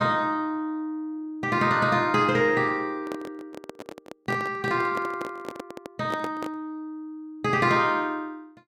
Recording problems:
handling noise; from 3 to 6.5 s; peak -4 dB vs average level

